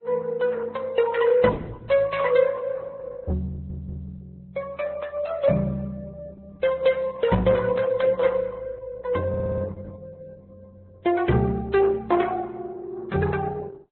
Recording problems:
lossy codec; Opus, then Vorbis, log-spectral distance 3 dB, nothing above 3.9 kHz
audio stuttering; at 3.5 s and at 9.5 s

